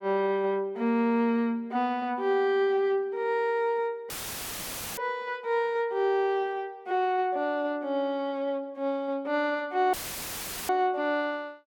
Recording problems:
dropout; at 4 s for 1 s and at 10 s for 1 s; filled with static

